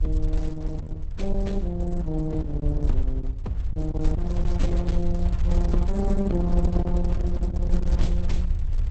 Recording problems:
lossy compression; Opus, log-spectral distance 2 dB, nothing above 8.2 kHz
low-frequency rumble; below 64 Hz, SNR -3 dB
packet loss; 3% of the sound replaced, filled with silence

